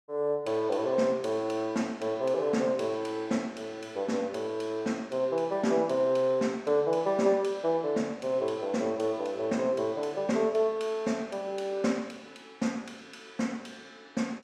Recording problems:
none

